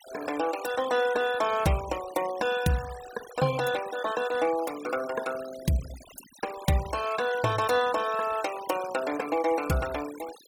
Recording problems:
denoising artefacts; signal-to-artefact ratio 14 dB

